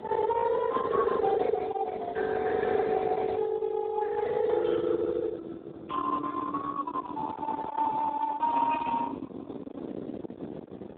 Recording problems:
phone line; 300 Hz to 2.2 kHz, Speex
distorted audio; soft clipping, signal-to-distortion ratio 8 dB
wind noise; below 1 kHz, SNR 12 dB

